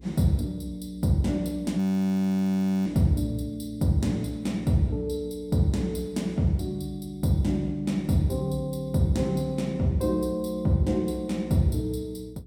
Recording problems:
hum; 60 Hz, harmonics up to 420 Hz, SNR 22 dB
audio freezing; at 2 s for 1 s

